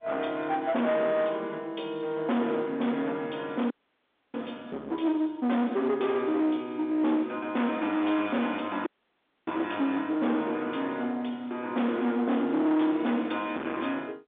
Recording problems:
phone line; 240 Hz to 3.6 kHz, G.711
distorted audio; hard clipping, uneven, signal-to-distortion ratio 7 dB
audio cutting out; at 3.5 s for 0.5 s and at 9 s for 0.5 s

